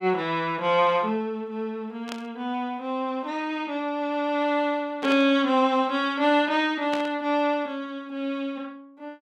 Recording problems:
burst of static; at 2 s, at 5 s and at 7 s; peak -5 dB vs average level

